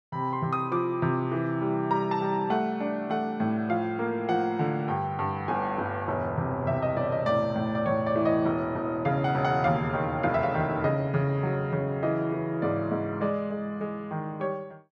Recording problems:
none

